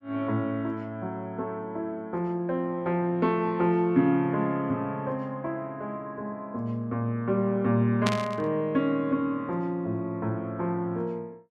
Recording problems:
burst of static; at 8 s; peak +3 dB vs average level

